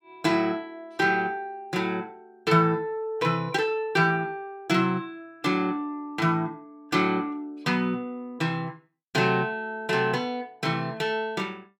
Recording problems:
none

